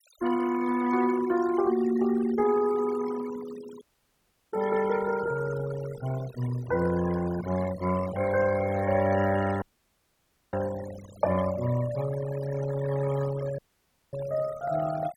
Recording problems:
denoising artefacts; signal-to-artefact ratio 13 dB
audio cutting out; at 4 s for 0.5 s, at 9.5 s for 1 s and at 14 s for 0.5 s

